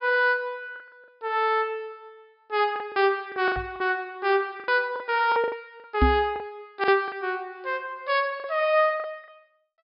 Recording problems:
treble cut off; nothing above 5.5 kHz
packet loss; 9% of the sound replaced, filled with the last packet
microphone thump; at 3.5 s and at 6 s; peak +7 dB vs average level

